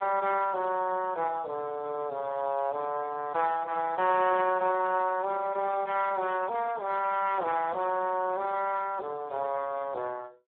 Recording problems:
phone line; 300 Hz to 3.5 kHz, Speex

